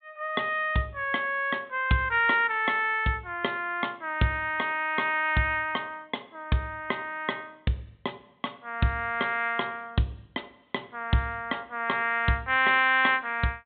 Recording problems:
treble missing; nothing above 4 kHz

